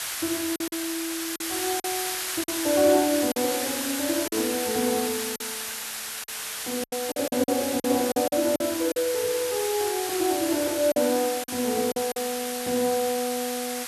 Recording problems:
background hiss; SNR 3 dB
lost packets; 7% of the sound replaced, filled with silence

